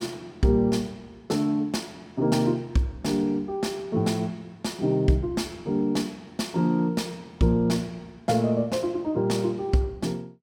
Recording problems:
none

